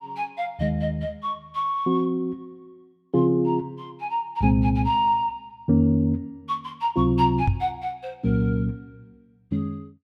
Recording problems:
microphone thump; at 7.5 s; peak +5 dB vs average level

